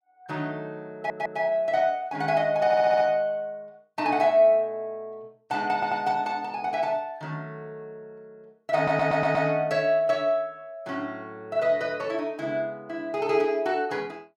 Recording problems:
audio stuttering; 4 times, first at 1 s

